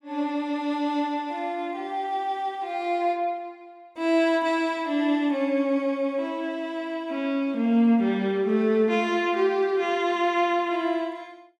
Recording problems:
none

